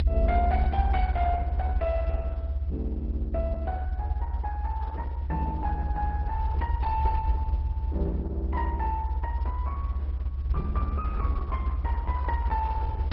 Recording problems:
lossy compression; Opus, then MP2, log-spectral distance 2 dB, nothing above 4.8 kHz
low-frequency rumble; below 72 Hz, strongest tone 70 Hz, SNR -7 dB

